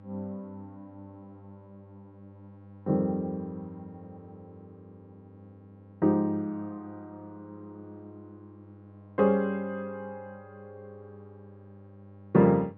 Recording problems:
hum; 50 Hz, harmonics up to 1.3 kHz, SNR 23 dB

